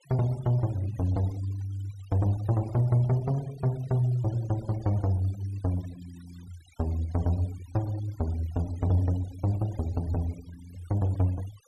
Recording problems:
noise reduction artefacts; signal-to-artefact ratio 23 dB

